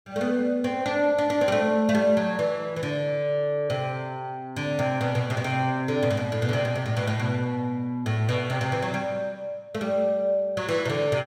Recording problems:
none

